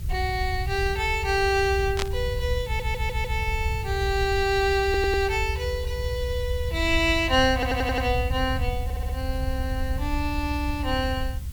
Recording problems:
hiss; SNR 21 dB
low-frequency rumble; below 80 Hz, SNR 5 dB
burst of static; at 2 s; peak +1 dB vs average level
stutter; 4 times, first at 2.5 s

